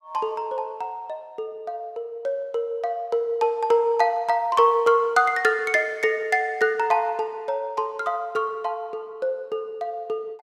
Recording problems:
none

